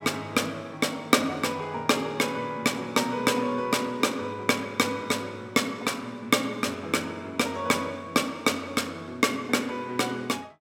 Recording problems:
none

